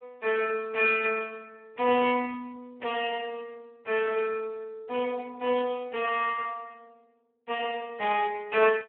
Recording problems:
telephone audio; 280 Hz to 3.3 kHz, Speex

